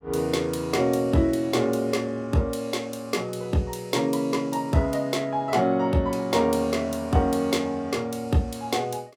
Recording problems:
none

